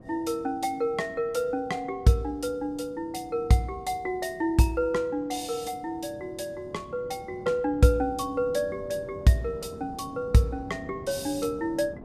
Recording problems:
wind noise; below 390 Hz, SNR 18 dB

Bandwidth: 14.5 kHz